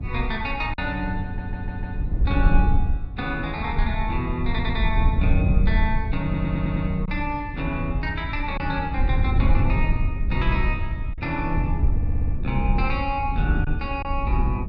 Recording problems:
low-frequency rumble; below 82 Hz, SNR -2 dB
packet loss; 1.3% of the sound replaced, filled with silence
audio stuttering; 4 times, first at 1 s

